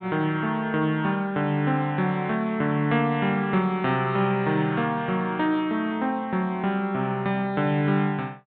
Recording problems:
treble cut off; nothing above 4 kHz

